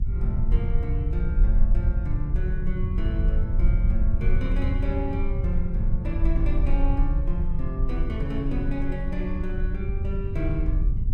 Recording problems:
rumble; below 46 Hz, SNR -3 dB
wind on the microphone; below 100 Hz, SNR -2 dB

